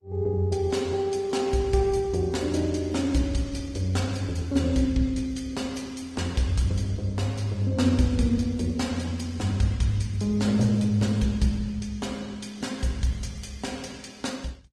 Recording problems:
lossy compression; MP3, then Opus, log-spectral distance 3 dB

